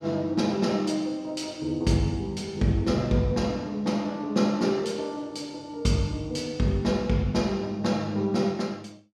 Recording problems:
none

